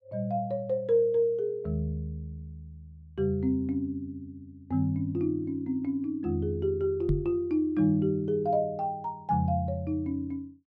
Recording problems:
microphone thump; at 7 s; peak +4 dB vs average level

